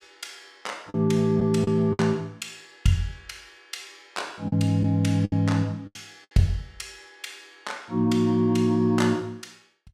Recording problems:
lost packets; 5% of the sound replaced, filled with the last packet

